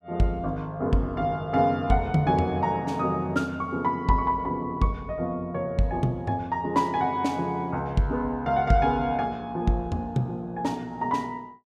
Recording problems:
none

